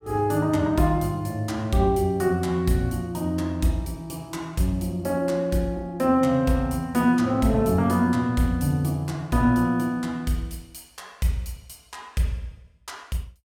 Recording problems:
none

